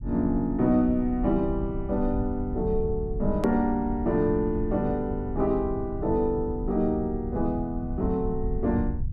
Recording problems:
low-frequency rumble; below 92 Hz, SNR 9 dB
hard cut with a click; at 3.5 s

